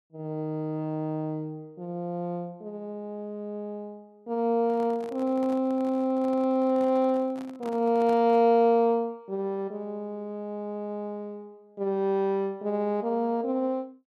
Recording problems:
handling noise; from 4.5 to 8.5 s; peak -11 dB vs average level

